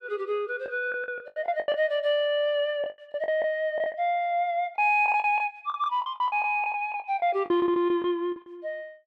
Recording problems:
lost packets; 13% of the sound replaced, filled with the last packet

